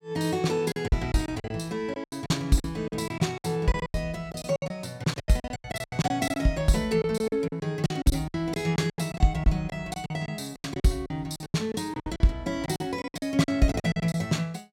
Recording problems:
lost packets; 18% of the sound replaced, filled with silence

